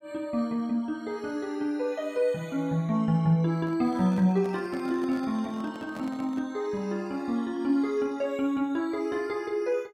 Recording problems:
microphone handling noise; from 3.5 to 6.5 s; peak -10 dB vs average level

